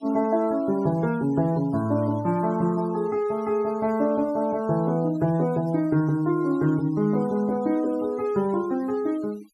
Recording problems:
denoising artefacts; signal-to-artefact ratio 23 dB

